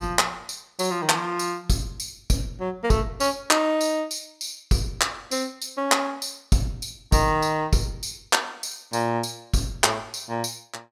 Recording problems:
none

